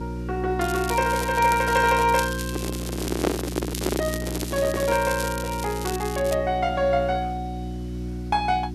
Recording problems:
hum; 60 Hz, harmonics up to 360 Hz, SNR 8 dB
background hiss; SNR 29 dB
crackling; at 0.5 s and from 1.5 to 6.5 s; loose cable, SNR 11 dB
handling noise; from 2.5 to 5 s; peak +4 dB vs average level

